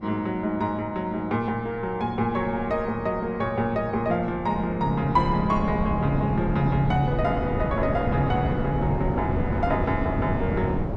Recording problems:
wind on the microphone; below 360 Hz, SNR 4 dB

